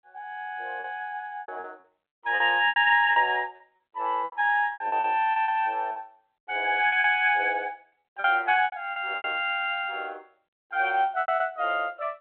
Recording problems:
telephone audio; 320 Hz to 3.4 kHz, G.726
packet loss; 11% of the sound replaced, filled with repeated pitch periods

